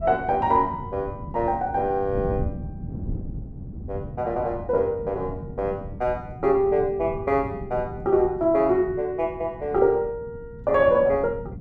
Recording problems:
wind on the microphone; below 200 Hz, SNR 13 dB

